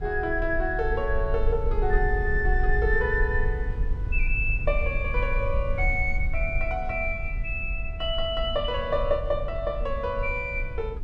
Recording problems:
low-frequency rumble; below 58 Hz, SNR 3 dB

